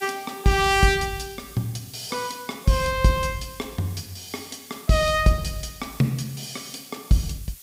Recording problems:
hiss; SNR 19 dB

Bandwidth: 15.5 kHz